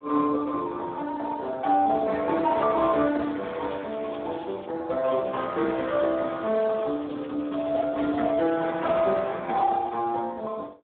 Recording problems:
phone line; 240 Hz to 3.8 kHz, Speex
crackling; from 3 to 4.5 s and from 5.5 to 9 s; loose cable, SNR 27 dB

